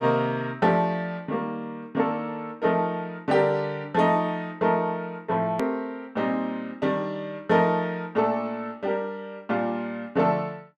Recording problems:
click at an edit; at 5.5 s

